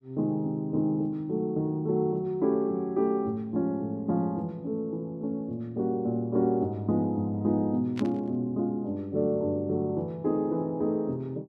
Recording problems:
burst of static; at 8 s; peak -7 dB vs average level

